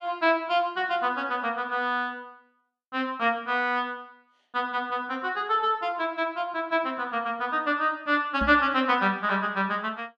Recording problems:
knock on the microphone; at 8.5 s; peak -2 dB vs average level

